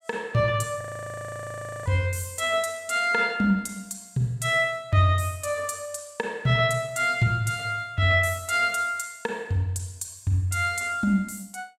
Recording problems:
frozen audio; at 1 s for 1 s

